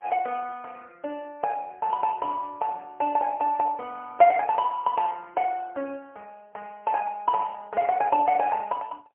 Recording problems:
phone line; 340 Hz to 2.9 kHz, AMR-NB, then MP3

